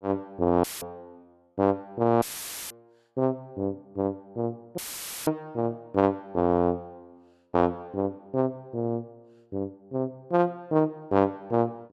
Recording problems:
audio cutting out; at 0.5 s, at 2 s and at 5 s; filled with static

